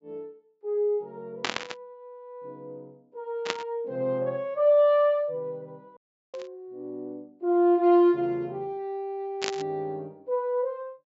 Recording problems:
treble cut off; nothing above 8 kHz
static burst; 4 times, first at 1.5 s; peak +2 dB vs average level
audio cutting out; at 6 s

